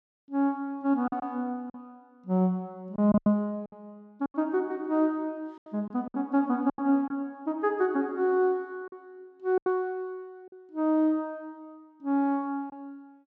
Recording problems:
packet loss; 7% of the sound replaced, filled with silence

